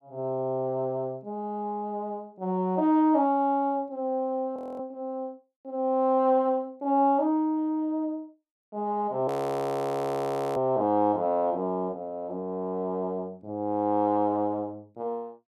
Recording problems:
frozen audio; at 4.5 s and at 9.5 s for 1.5 s

